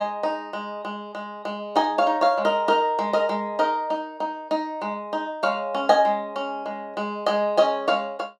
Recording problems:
none

